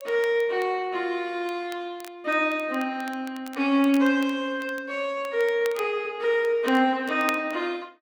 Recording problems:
crackling; vinyl, SNR 21 dB

